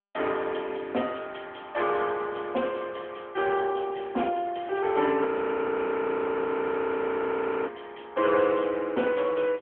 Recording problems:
phone line; 240 Hz to 3.4 kHz, AMR-NB
frozen audio; at 5.5 s for 2.5 s

